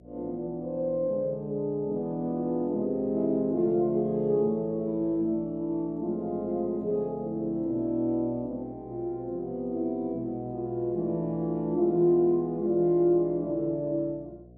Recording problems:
electrical hum; 60 Hz, harmonics up to 720 Hz, SNR 25 dB

